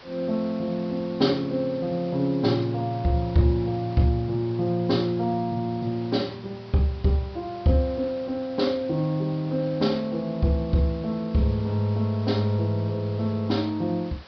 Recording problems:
treble missing; nothing above 5.5 kHz
hiss; slope -3 dB per octave, SNR 21 dB

